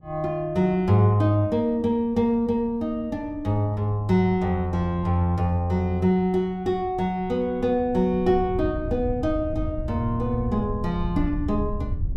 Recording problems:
wind noise; below 100 Hz, SNR 12 dB

